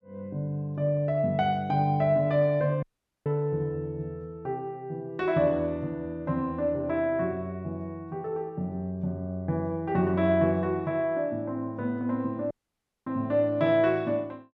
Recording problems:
audio cutting out; at 3 s and at 13 s for 0.5 s

